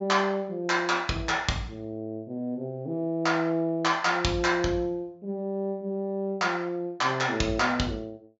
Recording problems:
low-pass filter; nothing above 7.5 kHz

